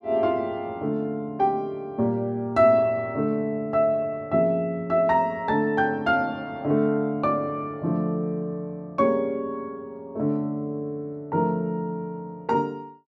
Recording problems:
none

